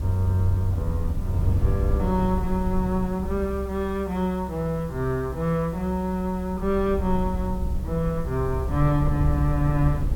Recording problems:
background hiss; slope +1 dB per octave, SNR 27 dB
rumble; below 88 Hz, SNR 5 dB

